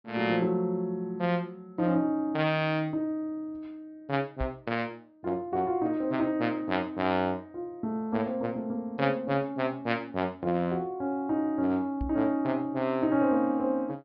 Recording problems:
treble missing; nothing above 5.5 kHz
microphone bump; at 4.5 s and at 12 s; peak -1 dB vs average level

